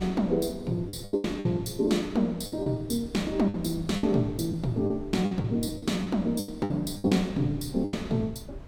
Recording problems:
wind noise; below 120 Hz, SNR 17 dB
lost packets; 11% of the sound replaced, filled with the last packet

